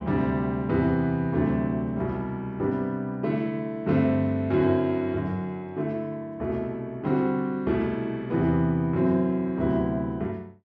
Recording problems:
none

